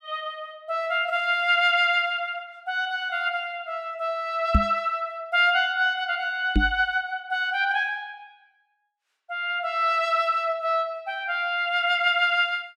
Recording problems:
microphone bump; at 4.5 s and at 6.5 s; peak +7 dB vs average level

